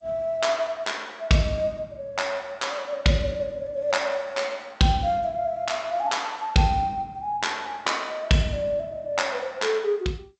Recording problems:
codec artefacts; G.722, log-spectral distance 2 dB, nothing above 7.8 kHz

